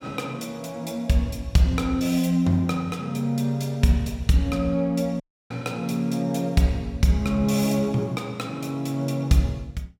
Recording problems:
dropout; at 5 s

